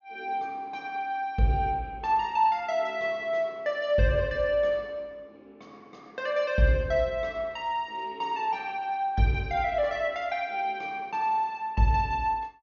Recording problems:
low-pass filter; nothing above 6.8 kHz

